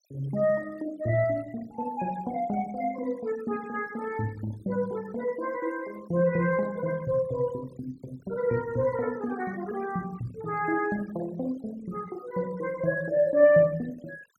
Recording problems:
noise reduction artefacts; signal-to-artefact ratio 22 dB

